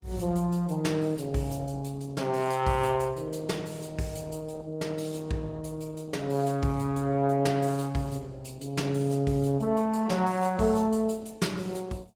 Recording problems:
lossy codec; Opus, log-spectral distance 3 dB

